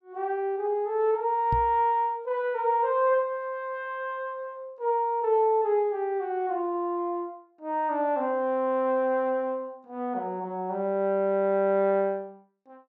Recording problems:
microphone bump; at 1.5 s; peak -1 dB vs average level

